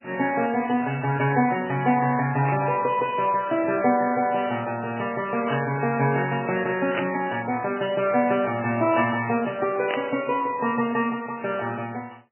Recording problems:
lossy compression; MP2, then MP3, log-spectral distance 5 dB, nothing above 2.9 kHz
static burst; 4 times, first at 2.5 s; peak -2 dB vs average level

